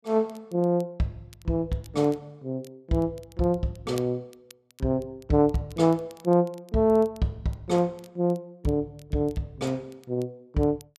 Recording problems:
crackle; vinyl, SNR 28 dB

